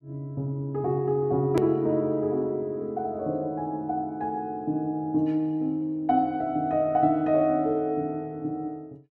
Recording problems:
click at an edit; at 1.5 s

